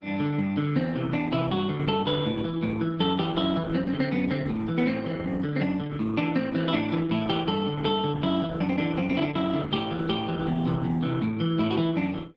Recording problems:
lossy compression; Opus, log-spectral distance 4 dB

